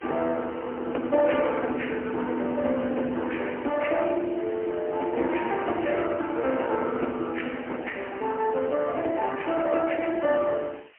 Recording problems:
telephone audio; 220 Hz to 3.1 kHz, AMR-NB, then MP3
hiss; SNR 27 dB

